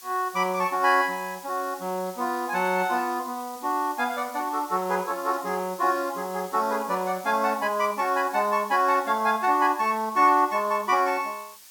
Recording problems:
hiss; slope +2 dB per octave, SNR 19 dB

